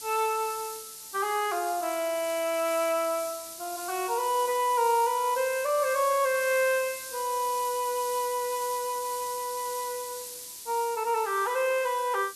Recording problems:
hiss; SNR 10 dB

